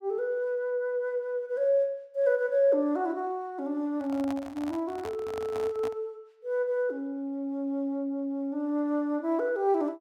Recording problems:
handling noise; from 4 to 6 s; peak -6 dB vs average level

